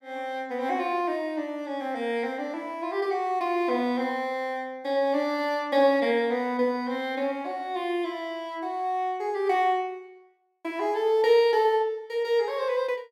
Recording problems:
none

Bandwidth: 16 kHz